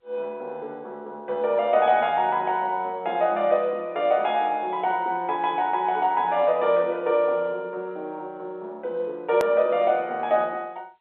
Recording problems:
phone line; 300 Hz to 3.8 kHz, G.711
edit click; at 9.5 s

